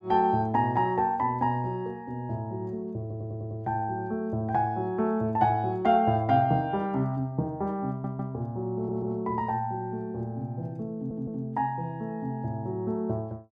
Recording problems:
audio stuttering; 4 times, first at 3 s

